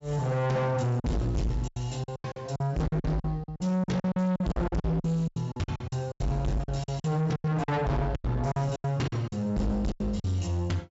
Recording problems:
treble cut off; nothing above 8 kHz
distortion; soft clipping, signal-to-distortion ratio 6 dB
packet loss; 17% of the sound replaced, filled with silence

